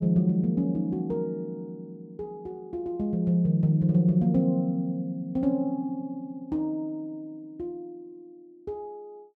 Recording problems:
none

